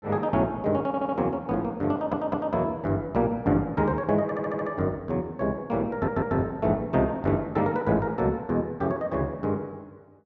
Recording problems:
stutter; 4 times, first at 1 s

